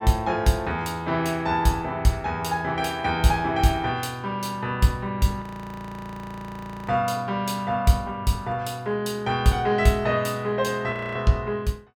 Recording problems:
frozen audio; at 5.5 s for 1.5 s and at 11 s

